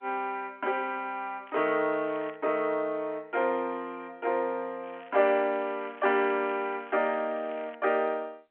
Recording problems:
phone line; 280 Hz to 3.3 kHz, G.711
crackle; at 1.5 s and from 5 to 8 s; loose cable, SNR 23 dB

